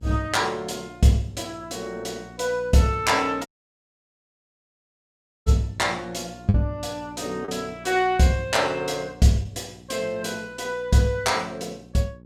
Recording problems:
hum; 60 Hz, harmonics up to 540 Hz, SNR 22 dB
lost packets; 2% of the sound replaced, filled with the last packet
audio cutting out; at 3.5 s for 2 s

